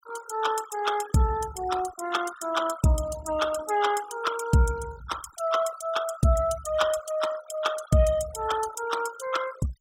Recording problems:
denoising artefacts; signal-to-artefact ratio 14 dB

